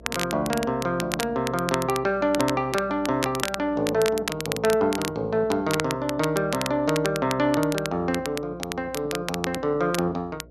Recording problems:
hum; 60 Hz, harmonics up to 660 Hz, SNR 24 dB
crackle; vinyl, SNR 8 dB

